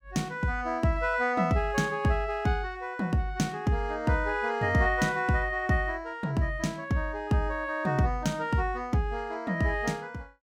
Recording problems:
none

